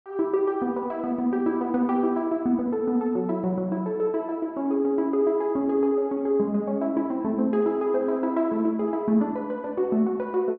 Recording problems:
none

